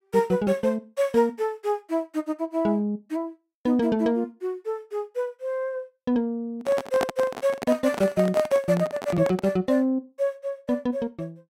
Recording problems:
handling noise; from 6.5 to 9.5 s; peak +3 dB vs average level

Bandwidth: 16 kHz